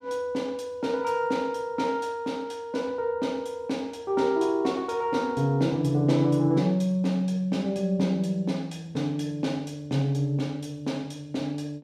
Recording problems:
none

